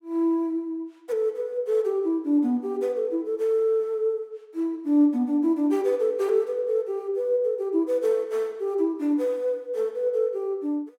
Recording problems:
none

